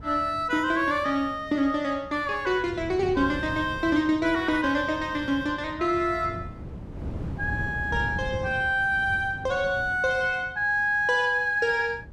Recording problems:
wind on the microphone; below 220 Hz, SNR 14 dB

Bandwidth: 14 kHz